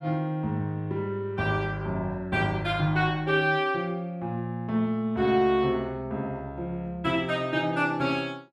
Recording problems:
none

